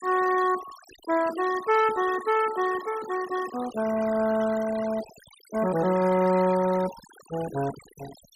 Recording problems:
denoising artefacts; signal-to-artefact ratio 15 dB

